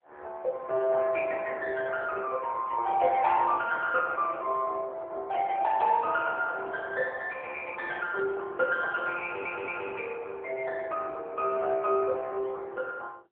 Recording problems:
phone line; 340 Hz to 3.2 kHz, AMR-NB
stutter; at 9 s

